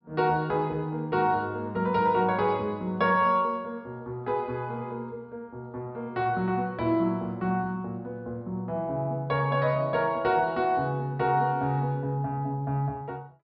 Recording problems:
treble missing; nothing above 5.4 kHz

